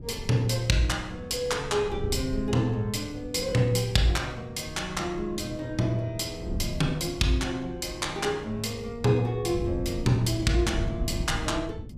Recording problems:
wind noise; below 160 Hz, SNR 10 dB

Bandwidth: 15 kHz